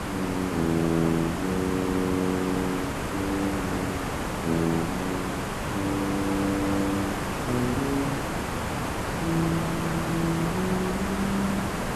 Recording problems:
hiss; SNR 1 dB

